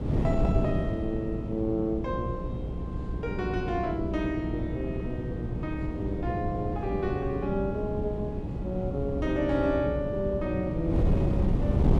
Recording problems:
hum; 60 Hz, harmonics up to 480 Hz, SNR 8 dB
wind on the microphone; below 220 Hz, SNR 1 dB

